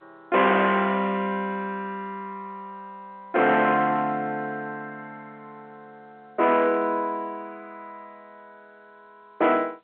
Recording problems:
phone line; 340 Hz to 3.4 kHz, G.711
distorted audio; hard clipping, signal-to-distortion ratio 10 dB

